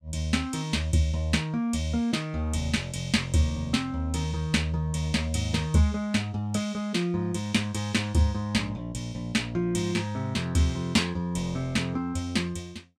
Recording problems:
none

